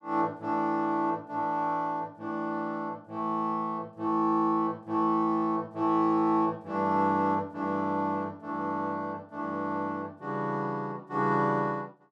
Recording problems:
none

